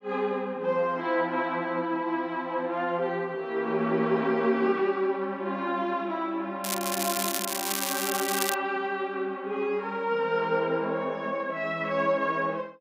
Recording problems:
crackling; from 6.5 to 8.5 s; loose cable, SNR 1 dB

